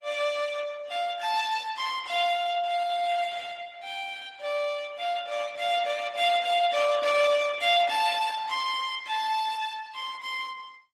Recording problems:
lossy codec; Opus, then Opus, log-spectral distance 5 dB

